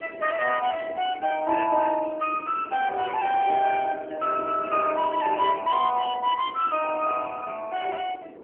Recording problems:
phone line; 320 Hz to 3.1 kHz, AMR-NB
wind noise; below 520 Hz, SNR 18 dB

